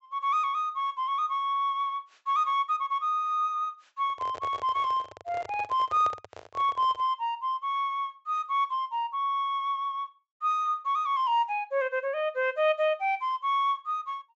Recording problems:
treble cut off; nothing above 7.8 kHz
handling noise; from 4 to 7 s; peak -6 dB vs average level

